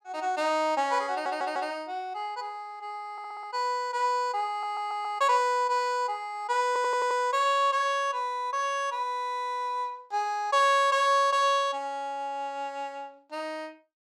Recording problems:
audio stuttering; 4 times, first at 1 s

